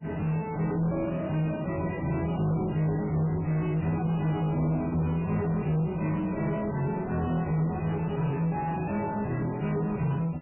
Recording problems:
lossy compression; MP3, log-spectral distance 4 dB, nothing above 2.9 kHz
distorted audio; soft clipping, signal-to-distortion ratio 4 dB

